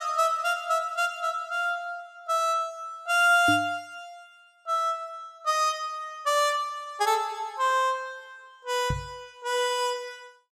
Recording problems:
microphone bump; at 3.5 s and at 9 s; peak +1 dB vs average level

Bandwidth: 14.5 kHz